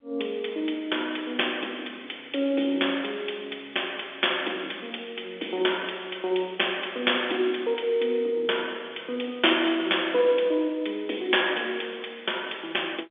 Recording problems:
telephone audio; 300 Hz to 3.6 kHz, G.711

